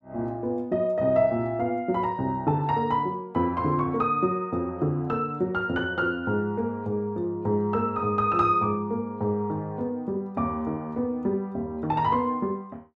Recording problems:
none

